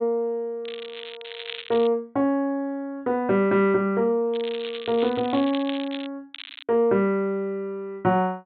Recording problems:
low-pass filter; nothing above 4 kHz
crackling; from 0.5 to 2 s, from 4.5 to 6 s and at 6.5 s; loose cable, SNR 14 dB

